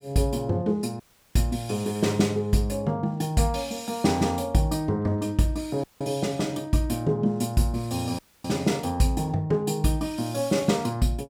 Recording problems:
dropout; at 1 s, at 6 s and at 8 s

